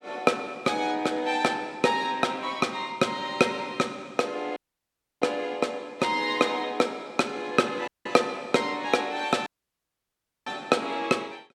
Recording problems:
audio cutting out; at 4.5 s for 0.5 s, at 8 s and at 9.5 s for 1 s

